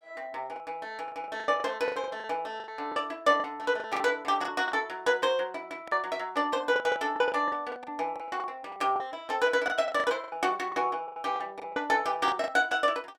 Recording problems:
lost packets; 13% of the sound replaced, filled with the last packet

